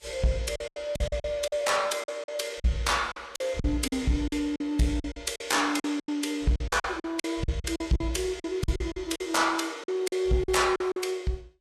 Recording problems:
lossy codec; Vorbis, log-spectral distance 3 dB, nothing above 12.7 kHz
distorted audio; soft clipping, signal-to-distortion ratio 12 dB
lost packets; 14% of the sound replaced, filled with silence

